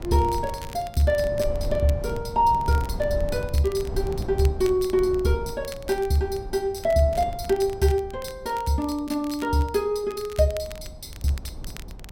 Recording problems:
wind on the microphone; below 120 Hz, SNR 11 dB
crackle; vinyl, SNR 21 dB

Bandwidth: 16 kHz